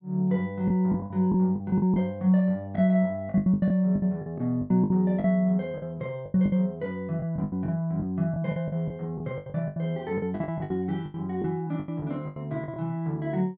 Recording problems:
packet loss; 15% of the sound replaced, filled with the last packet

